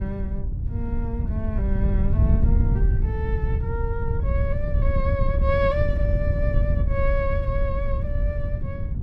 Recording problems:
wind noise; below 96 Hz, SNR -5 dB

